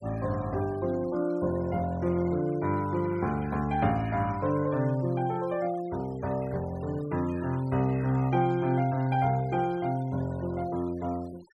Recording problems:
denoising artefacts; signal-to-artefact ratio 22 dB

